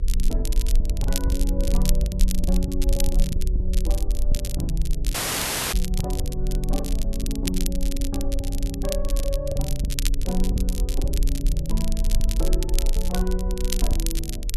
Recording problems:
hum; 50 Hz, harmonics up to 500 Hz, SNR 14 dB
rumble; below 46 Hz, SNR -5 dB
crackling; vinyl, SNR 3 dB
packet loss; 11% of the sound replaced, filled with the last packet
dropout; at 5 s for 0.5 s

